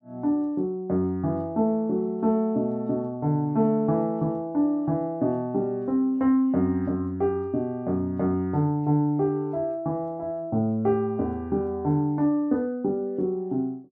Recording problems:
none

